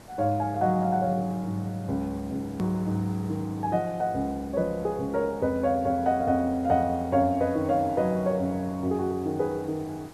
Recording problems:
hiss; slope -6 dB per octave, SNR 21 dB
edit click; at 2.5 s

